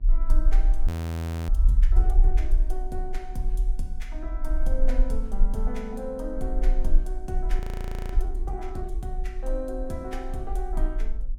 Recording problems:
hum; 60 Hz, harmonics up to 720 Hz, SNR 20 dB
rumble; below 38 Hz, strongest tone 28 Hz, SNR -8 dB
frozen audio; at 1 s for 0.5 s and at 7.5 s for 0.5 s

